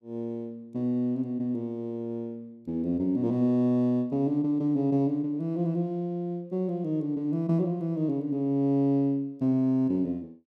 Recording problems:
none

